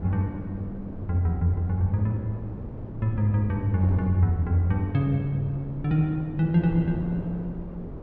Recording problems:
wind noise; below 310 Hz, SNR 11 dB

